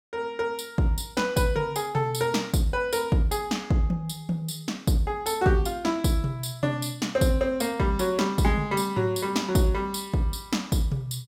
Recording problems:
none

